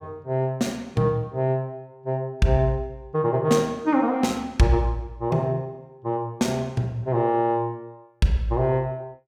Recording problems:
none

